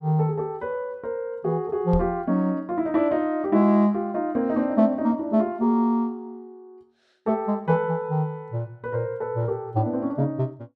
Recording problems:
microphone bump; at 2 s; peak -1 dB vs average level

